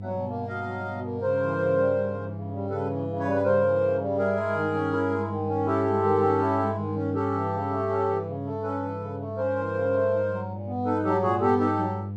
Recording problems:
electrical hum; 50 Hz, harmonics up to 500 Hz, SNR 10 dB

